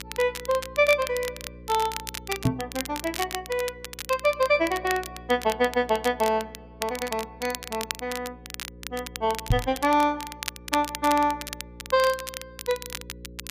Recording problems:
hum; 60 Hz, harmonics up to 540 Hz, SNR 20 dB
crackle; vinyl, SNR 10 dB
microphone thump; at 2.5 s and at 9.5 s; peak +7 dB vs average level

